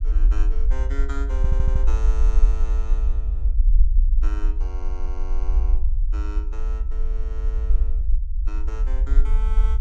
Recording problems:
rumble; below 48 Hz, SNR -16 dB
audio stuttering; at 1.5 s and at 4.5 s

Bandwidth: 16.5 kHz